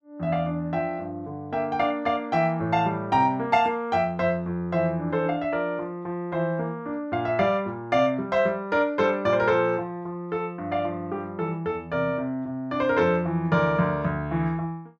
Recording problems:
none

